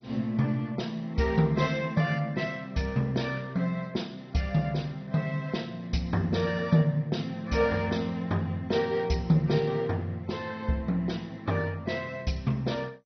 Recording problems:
codec artefacts; MP2, log-spectral distance 3 dB, nothing above 6 kHz

